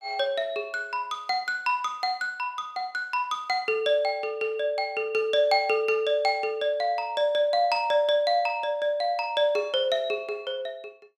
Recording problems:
none

